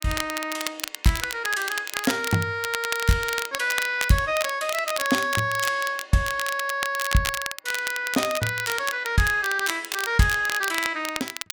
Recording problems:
crackle; vinyl, SNR 7 dB

